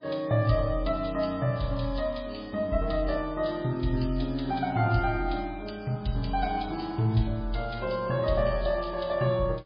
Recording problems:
lossy compression; MP3, log-spectral distance 5 dB, nothing above 4.6 kHz

